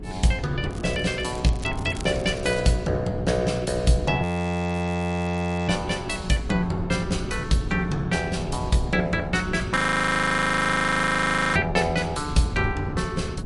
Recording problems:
lossy codec; MP3, log-spectral distance 4 dB, nothing above 11 kHz
hum; 60 Hz, harmonics up to 420 Hz, SNR 17 dB
wind on the microphone; below 180 Hz, SNR 10 dB
crackle; from 0.5 to 2.5 s; loose cable, SNR 20 dB
audio freezing; at 4 s for 1.5 s and at 10 s for 2 s

